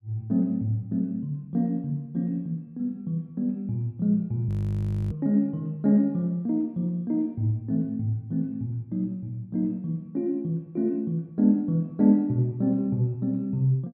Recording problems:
frozen audio; at 4.5 s for 0.5 s

